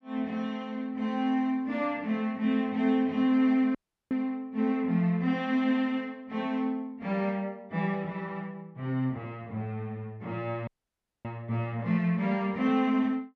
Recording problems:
audio cutting out; at 4 s and at 11 s for 0.5 s

